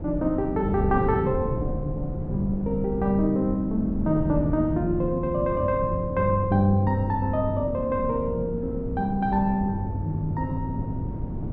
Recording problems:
wind noise; below 220 Hz, SNR 7 dB

